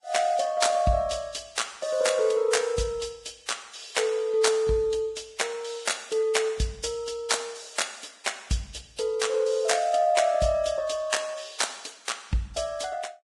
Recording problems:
lossy codec; Vorbis, log-spectral distance 5 dB, nothing above 10.7 kHz

